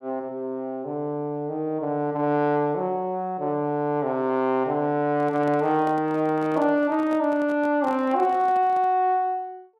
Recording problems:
handling noise; from 5 to 9 s; peak -11 dB vs average level

